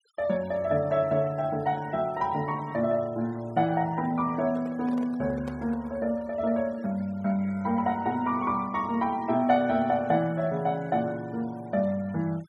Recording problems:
denoising artefacts; signal-to-artefact ratio 25 dB
microphone handling noise; from 4.5 to 6 s; peak -8 dB vs average level

